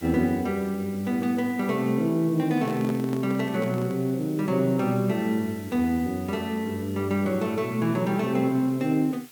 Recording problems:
background hiss; slope 0 dB per octave, SNR 22 dB
handling noise; from 2.5 to 4 s; peak -4 dB vs average level

